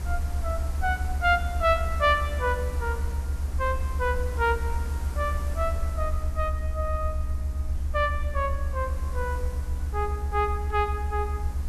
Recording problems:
hum; 60 Hz, harmonics up to 300 Hz, SNR 15 dB
hiss; slope -5 dB per octave, SNR 16 dB
rumble; below 76 Hz, strongest tone 70 Hz, SNR 1 dB

